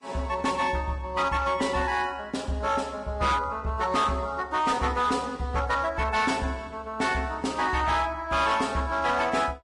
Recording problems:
lossy codec; Vorbis, log-spectral distance 3 dB, nothing above 10.1 kHz
distortion; hard clipping, signal-to-distortion ratio 12 dB

